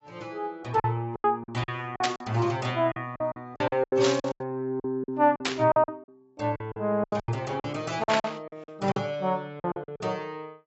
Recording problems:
lossy compression; AAC, log-spectral distance 2 dB, nothing above 7.8 kHz
packet loss; 15% of the sound replaced, filled with silence
burst of static; 4 times, first at 2 s; peak +5 dB vs average level

